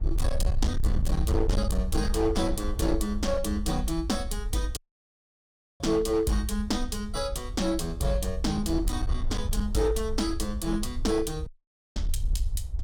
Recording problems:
distorted audio; hard clipping, signal-to-distortion ratio 10 dB
rumble; below 70 Hz, SNR 3 dB
wind on the microphone; below 770 Hz, SNR 25 dB
audio cutting out; at 5 s for 1 s and at 11 s

